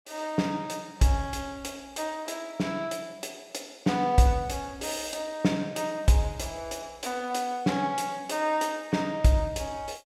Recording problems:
none

